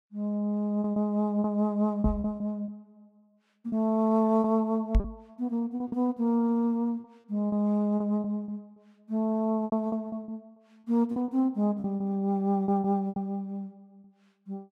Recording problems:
packet loss; 10% of the sound replaced, filled with repeated pitch periods
knock on the microphone; at 2 s and at 5 s; peak +6 dB vs average level

